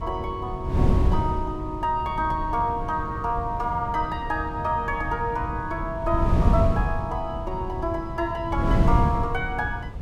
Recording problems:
wind on the microphone; below 160 Hz, SNR 1 dB

